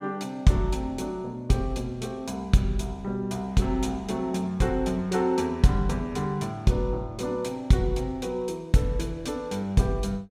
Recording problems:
none

